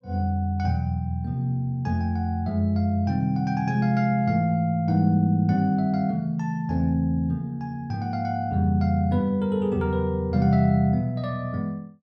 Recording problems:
none

